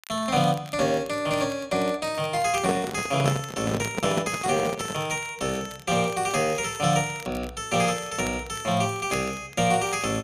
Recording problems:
crackle; vinyl, SNR 20 dB
handling noise; from 2.5 to 5 s; peak +2 dB vs average level

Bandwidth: 14.5 kHz